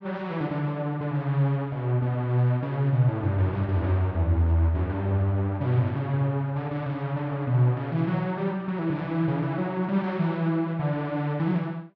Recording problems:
treble cut off; nothing above 8 kHz

